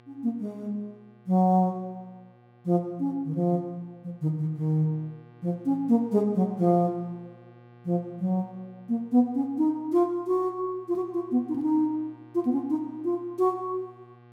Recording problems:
hum; 60 Hz, harmonics up to 2.3 kHz, SNR 27 dB

